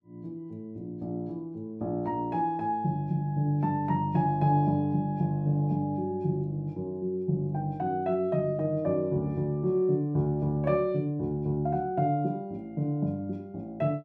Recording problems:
none

